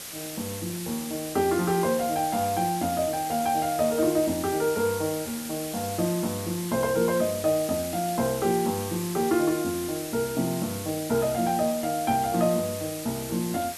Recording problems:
hiss; slope 0 dB per octave, SNR 9 dB

